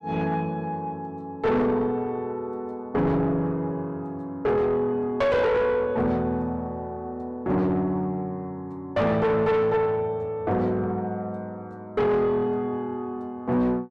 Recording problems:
distortion; soft clipping, signal-to-distortion ratio 7 dB

